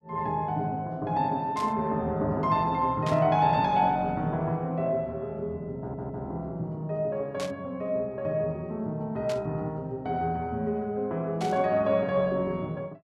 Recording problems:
burst of static; 5 times, first at 1.5 s; peak -7 dB vs average level
stutter; at 6 s

